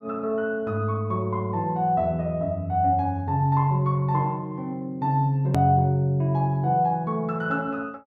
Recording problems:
hard cut with a click; at 5.5 s

